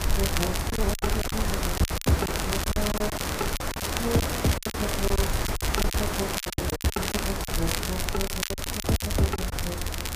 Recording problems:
hiss; slope -5 dB per octave, SNR 1 dB
rumble; below 78 Hz, SNR 3 dB
crackling; vinyl, SNR 2 dB
packet loss; 16% of the sound replaced, filled with silence

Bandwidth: 15 kHz